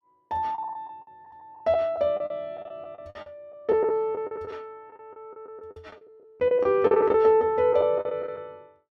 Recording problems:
packet loss; 14% of the sound replaced, filled with the last packet

